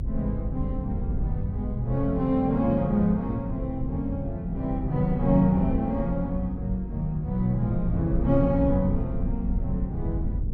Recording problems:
rumble; below 98 Hz, SNR 6 dB

